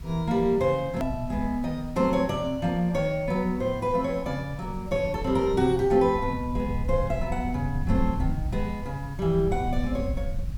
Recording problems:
hiss; slope -2 dB per octave, SNR 27 dB
rumble; below 92 Hz, SNR 9 dB
click at an edit; at 1 s

